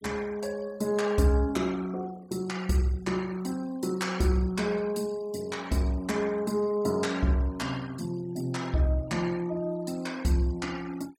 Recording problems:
noise reduction artefacts; signal-to-artefact ratio 21 dB

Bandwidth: 17 kHz